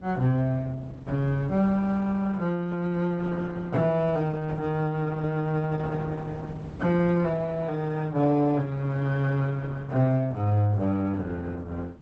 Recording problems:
lossy codec; Opus, log-spectral distance 2 dB, nothing above 7.6 kHz
wind noise; below 290 Hz, SNR 18 dB

